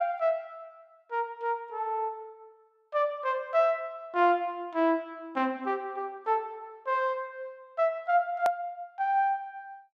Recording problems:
hard cut with a click; at 8.5 s

